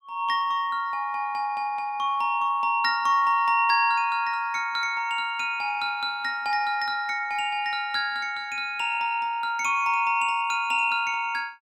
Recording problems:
none

